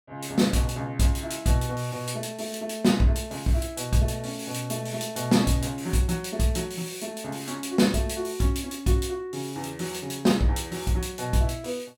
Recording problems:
none

